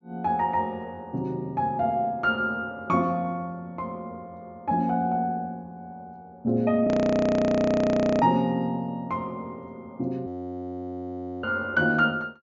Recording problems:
treble cut off; nothing above 7.1 kHz
audio freezing; at 7 s for 1.5 s and at 10 s for 1 s

